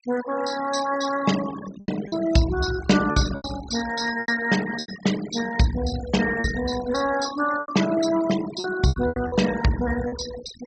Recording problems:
treble cut off; nothing above 7.9 kHz
denoising artefacts; signal-to-artefact ratio 12 dB
packet loss; 8% of the sound replaced, filled with repeated pitch periods

